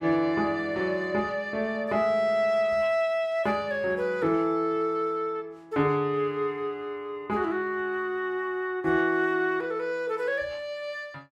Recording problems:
none

